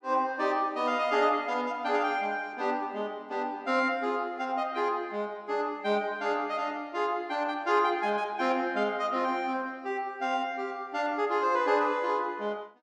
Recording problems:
none

